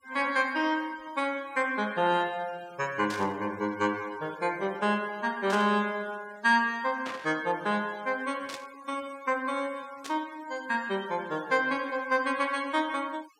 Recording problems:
noise reduction artefacts; signal-to-artefact ratio 22 dB
burst of static; 5 times, first at 3 s; peak -5 dB vs average level

